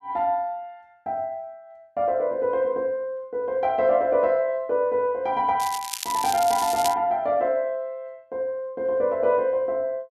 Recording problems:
crackle; from 5.5 to 7 s; loose cable, SNR 8 dB

